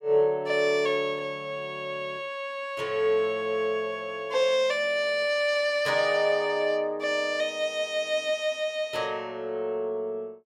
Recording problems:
none

